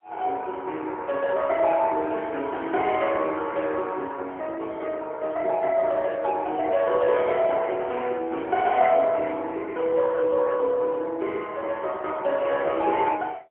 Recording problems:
telephone audio; 300 Hz to 3.3 kHz, AMR-NB, then MP3

